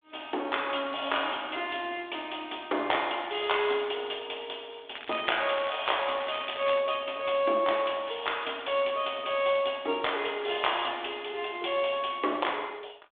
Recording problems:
phone line; 260 Hz to 3.6 kHz, G.726
crackle; from 5 to 7 s; loose cable, SNR 12 dB

